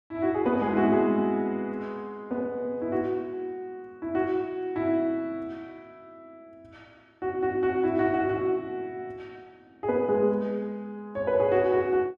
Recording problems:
none

